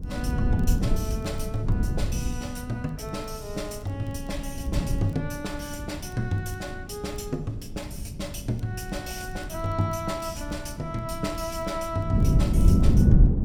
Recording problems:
wind on the microphone; below 170 Hz, SNR -5 dB
crackle; vinyl, SNR 30 dB

